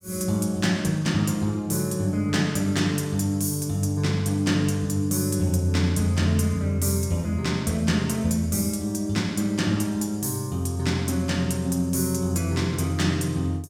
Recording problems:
none

